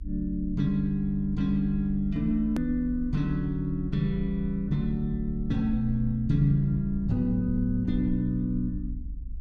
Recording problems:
rumble; below 64 Hz, SNR 10 dB
click at an edit; at 2.5 s

